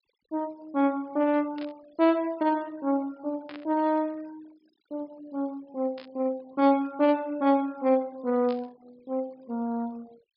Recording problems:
treble missing; nothing above 5.5 kHz
noise reduction artefacts; signal-to-artefact ratio 27 dB
burst of static; 4 times, first at 1.5 s; peak -12 dB vs average level

